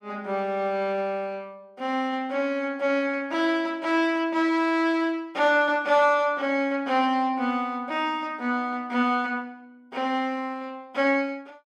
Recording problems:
none

